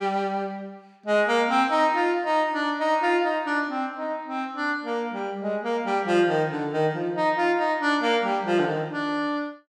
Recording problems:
none

